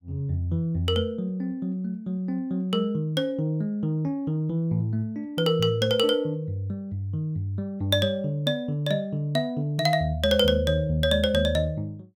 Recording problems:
none

